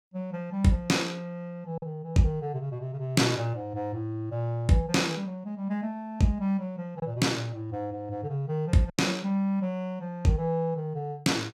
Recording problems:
lost packets; 1.2% of the sound replaced, filled with silence

